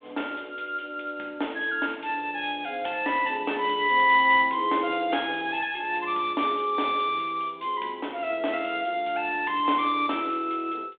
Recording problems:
telephone audio; 260 Hz to 3.6 kHz, G.726

